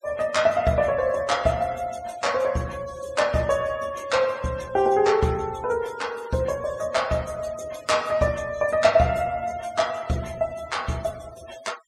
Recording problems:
denoising artefacts; signal-to-artefact ratio 22 dB

